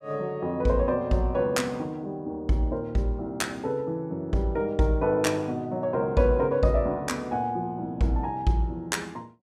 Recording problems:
none

